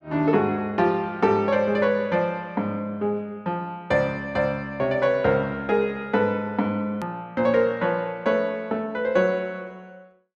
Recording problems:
hard cut with a click; at 7 s

